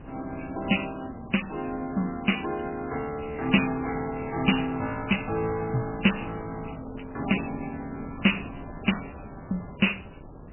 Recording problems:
codec artefacts; MP3, log-spectral distance 7 dB, nothing above 3 kHz
wind on the microphone; below 440 Hz, SNR 15 dB

